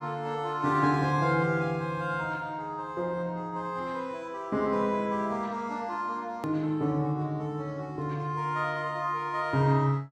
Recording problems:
hard cut with a click; at 6.5 s

